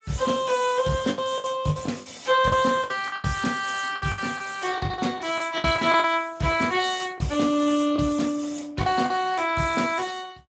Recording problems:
lossy codec; Speex, log-spectral distance 7 dB, nothing above 7.8 kHz
packet loss; 10% of the sound replaced, filled with the last packet

